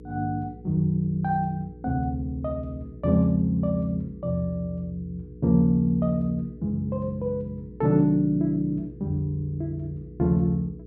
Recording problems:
hum; 60 Hz, harmonics up to 480 Hz, SNR 18 dB

